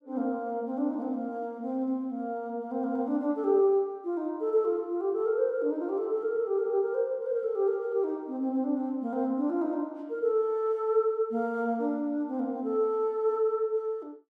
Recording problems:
none

